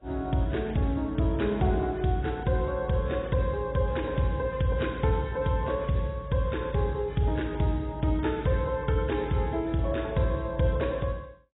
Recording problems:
lossy codec; AAC, log-spectral distance 4 dB, nothing above 3.8 kHz

